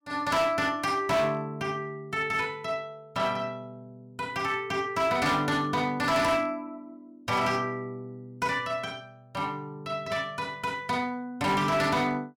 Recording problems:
distorted audio; hard clipping, signal-to-distortion ratio 11 dB

